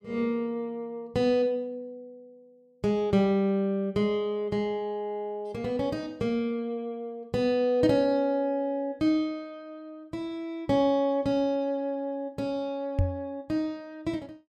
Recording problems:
knock on the microphone; at 13 s; peak +6 dB vs average level

